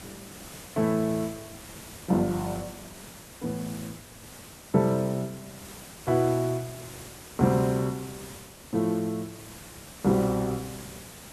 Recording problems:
hiss; slope -3 dB per octave, SNR 15 dB

